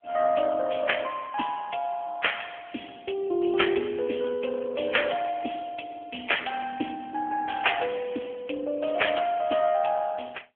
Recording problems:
telephone audio; 220 Hz to 3.3 kHz, AMR-NB

